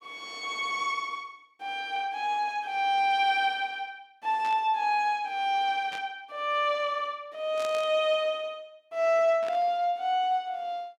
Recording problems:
burst of static; 4 times, first at 4.5 s; peak -9 dB vs average level

